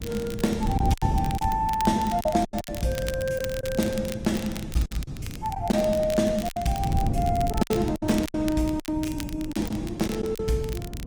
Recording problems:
lossy compression; Opus, log-spectral distance 2 dB, nothing above 18.5 kHz
wind noise; below 190 Hz, SNR 6 dB
crackle; vinyl, SNR 14 dB
lost packets; 9% of the sound replaced, filled with silence

